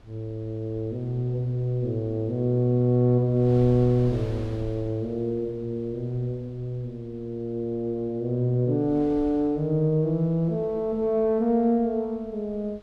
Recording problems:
wind on the microphone; below 200 Hz, SNR 21 dB

